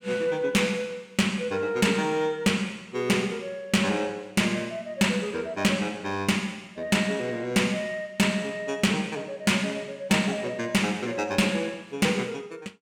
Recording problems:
distortion; soft clipping, signal-to-distortion ratio 10 dB

